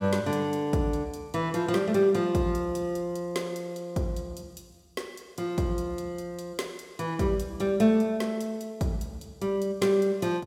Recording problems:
none

